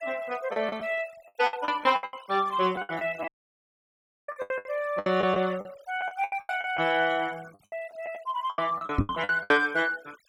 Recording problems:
denoising artefacts; signal-to-artefact ratio 22 dB
packet loss; 16% of the sound replaced, filled with the last packet
dropout; at 3.5 s for 1 s
knock on the microphone; at 9 s; peak +7 dB vs average level

